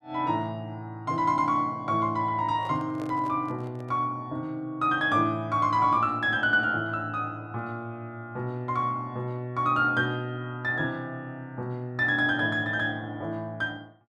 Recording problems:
microphone handling noise; from 2.5 to 4 s; peak -10 dB vs average level

